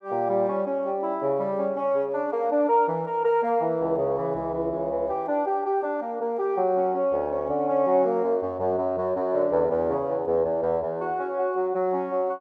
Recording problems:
none

